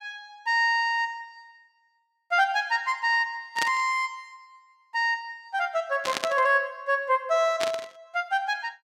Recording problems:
burst of static; at 3.5 s, at 6 s and at 7.5 s; peak +1 dB vs average level

